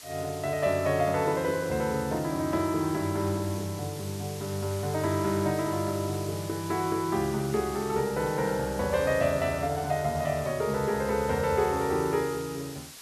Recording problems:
hiss; slope +1 dB per octave, SNR 14 dB

